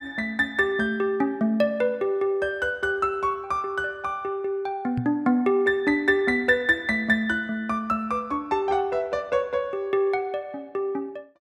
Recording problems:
microphone thump; at 5 s; peak -1 dB vs average level

